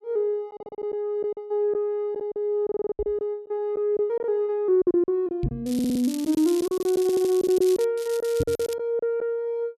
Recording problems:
packet loss; 10% of the sound replaced, filled with silence
audio stuttering; 4 times, first at 0.5 s
microphone thump; at 2.5 s, at 5.5 s and at 8.5 s; peak +1 dB vs average level
crackle; from 5.5 to 8 s and at 8 s; loose cable, SNR 15 dB

